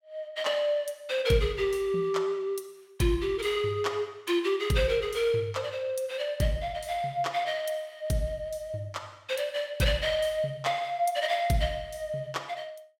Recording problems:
none

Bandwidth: 17 kHz